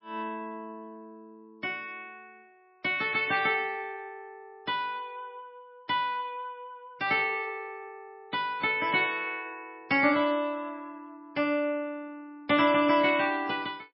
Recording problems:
codec artefacts; MP3, log-spectral distance 2 dB, nothing above 4.9 kHz

